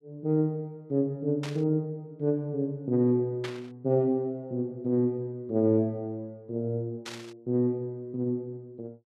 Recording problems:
burst of static; at 1.5 s, at 3.5 s and at 7 s; peak -5 dB vs average level

